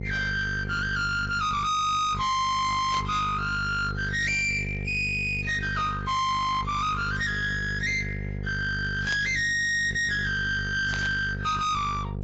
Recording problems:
lossy compression; AAC, log-spectral distance 3 dB, nothing above 7.3 kHz
distortion; hard clipping, uneven, signal-to-distortion ratio 7 dB
electrical hum; 50 Hz, harmonics up to 2.4 kHz, SNR 8 dB
static burst; at 3 s, at 9 s and at 11 s; peak -6 dB vs average level

